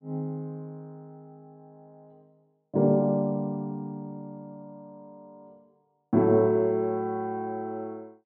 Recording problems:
treble cut off; nothing above 3.9 kHz

